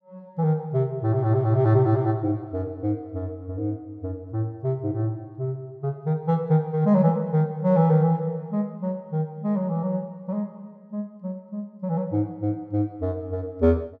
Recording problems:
none

